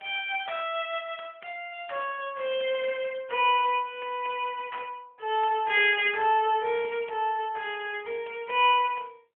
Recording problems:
phone line; 240 Hz to 3.4 kHz, AMR-NB

